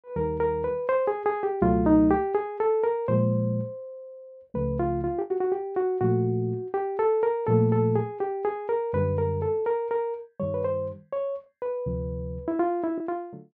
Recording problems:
packet loss; 0.8% of the sound replaced, filled with the last packet

